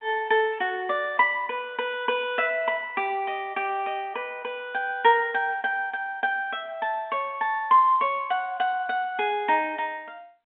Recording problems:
telephone audio; 190 Hz to 3.6 kHz, G.711

